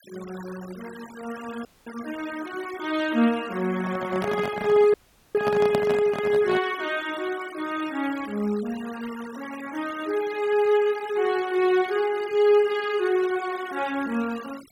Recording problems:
denoising artefacts; signal-to-artefact ratio 19 dB
audio cutting out; at 1.5 s and at 5 s
handling noise; from 4 to 6.5 s; peak +2 dB vs average level

